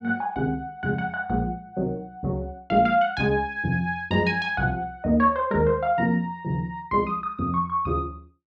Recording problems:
none

